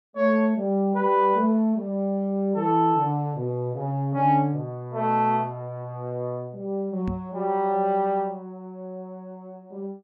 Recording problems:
microphone thump; at 7 s; peak -3 dB vs average level

